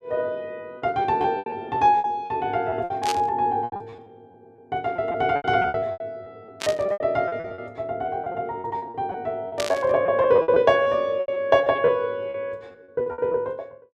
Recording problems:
packet loss; 15% of the sound replaced, filled with repeated pitch periods
burst of static; at 3 s, at 6.5 s and at 9.5 s; peak -1 dB vs average level

